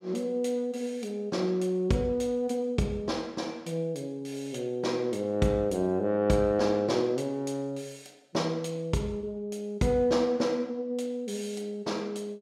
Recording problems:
none

